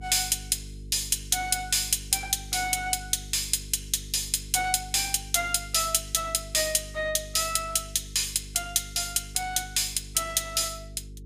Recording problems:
hum; 50 Hz, harmonics up to 450 Hz, SNR 17 dB

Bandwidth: 15 kHz